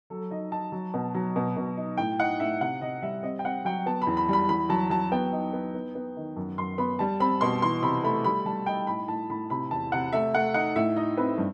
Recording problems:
none

